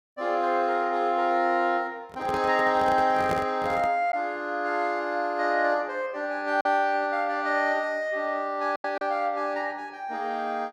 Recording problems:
lost packets; 1.5% of the sound replaced, filled with silence
handling noise; from 2 to 4 s; peak -1 dB vs average level

